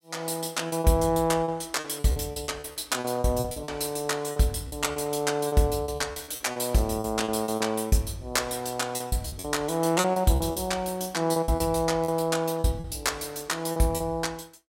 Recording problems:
packet loss; 13% of the sound replaced, filled with repeated pitch periods

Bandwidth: 16 kHz